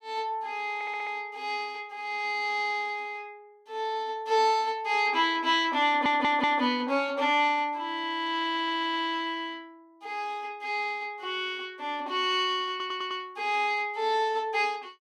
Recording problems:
stutter; 4 times, first at 0.5 s

